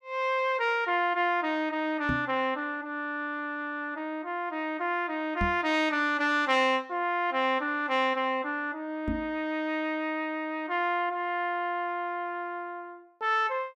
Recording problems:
microphone bump; at 2 s, at 5.5 s and at 9 s; peak +1 dB vs average level

